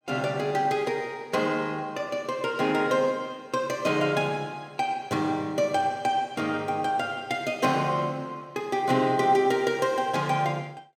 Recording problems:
none

